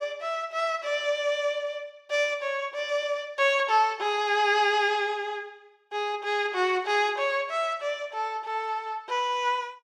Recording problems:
none

